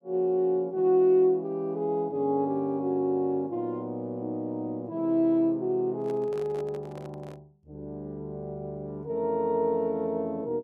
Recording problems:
handling noise; from 6 to 7.5 s; peak -12 dB vs average level

